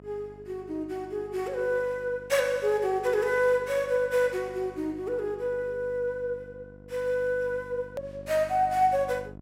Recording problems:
electrical hum; 50 Hz, harmonics up to 1.1 kHz, SNR 20 dB
click at an edit; at 8 s

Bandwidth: 16.5 kHz